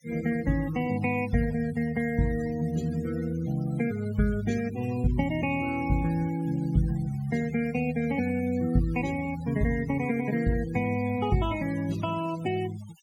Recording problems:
noise reduction artefacts; signal-to-artefact ratio 18 dB

